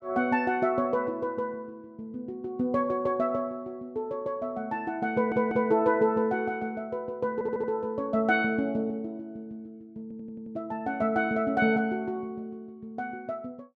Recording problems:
audio stuttering; at 5 s, at 7.5 s and at 10 s

